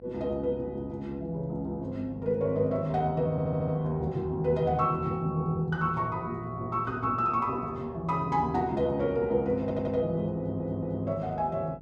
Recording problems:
electrical hum; 50 Hz, harmonics up to 800 Hz, SNR 22 dB
audio stuttering; at 3.5 s, at 9.5 s and at 10 s

